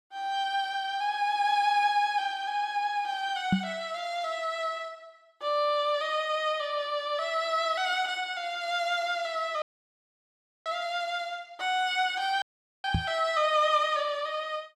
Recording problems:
knock on the microphone; at 3.5 s and at 13 s; peak +7 dB vs average level
audio cutting out; at 9.5 s for 1 s and at 12 s

